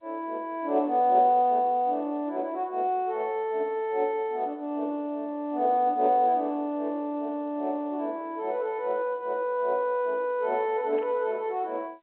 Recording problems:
telephone audio; 240 Hz to 4 kHz, G.711
burst of static; at 11 s; peak -17 dB vs average level

